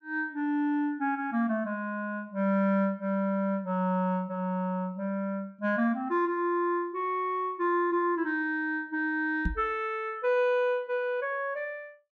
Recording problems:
knock on the microphone; at 9.5 s; peak +2 dB vs average level

